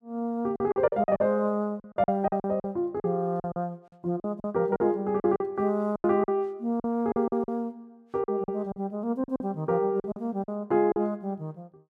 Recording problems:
packet loss; 12% of the sound replaced, filled with silence

